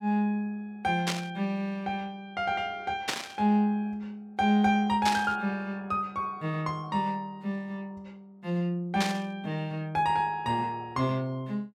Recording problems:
static burst; 4 times, first at 1 s; peak +5 dB vs average level

